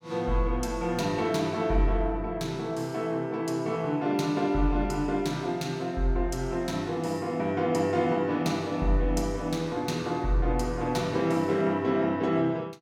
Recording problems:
none

